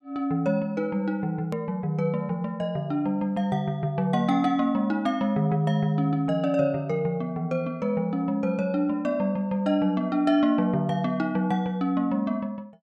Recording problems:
click at an edit; at 1.5 s

